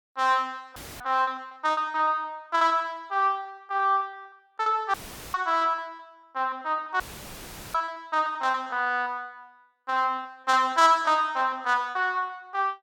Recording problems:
lost packets; 11% of the sound replaced, filled with repeated pitch periods
dropout; at 1 s, at 5 s and at 7 s for 0.5 s; filled with static

